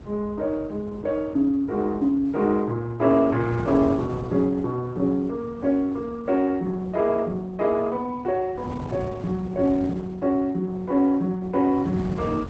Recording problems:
lossy codec; Opus, log-spectral distance 2 dB
wind on the microphone; below 240 Hz, SNR 14 dB

